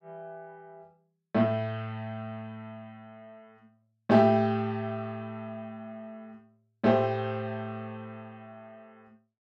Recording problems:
none

